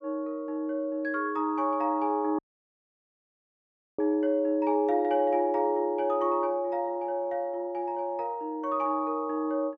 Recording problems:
audio cutting out; at 2.5 s for 1.5 s

